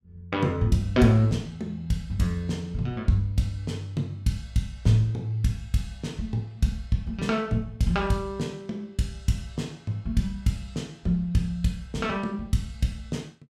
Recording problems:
none

